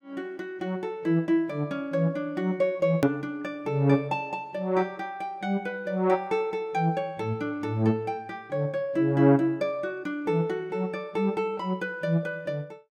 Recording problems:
hard cut with a click; at 3 s

